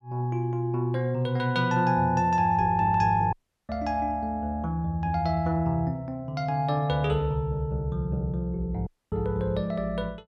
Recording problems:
audio cutting out; at 3.5 s and at 9 s

